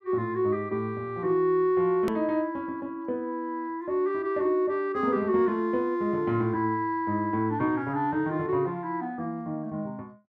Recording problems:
click at an edit; at 2 s

